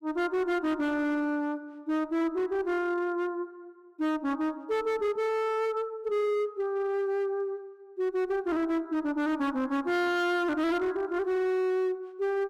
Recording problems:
distorted audio; hard clipping, signal-to-distortion ratio 11 dB

